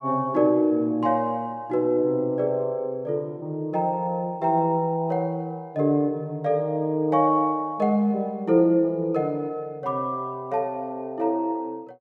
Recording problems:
none

